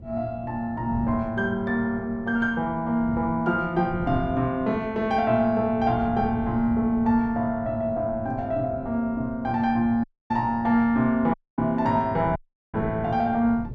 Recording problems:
wind noise; below 190 Hz, SNR 14 dB
dropout; at 10 s, at 11 s and at 12 s

